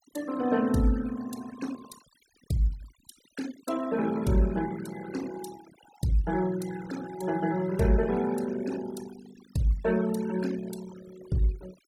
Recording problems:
noise reduction artefacts; signal-to-artefact ratio 16 dB

